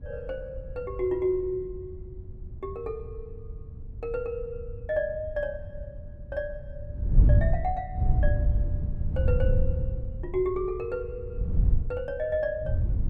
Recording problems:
wind noise; below 92 Hz, SNR -4 dB

